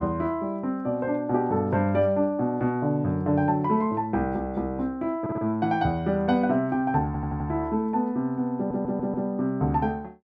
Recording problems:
audio stuttering; at 5 s, at 7 s and at 8.5 s

